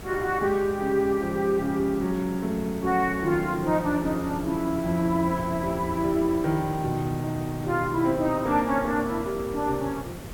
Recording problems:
background hiss; slope -6 dB per octave, SNR 13 dB

